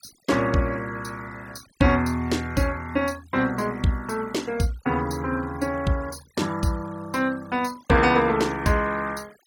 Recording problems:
noise reduction artefacts; signal-to-artefact ratio 21 dB

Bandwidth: 17.5 kHz